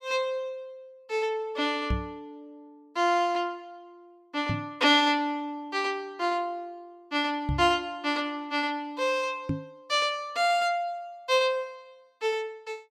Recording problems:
microphone thump; 4 times, first at 2 s; peak +2 dB vs average level

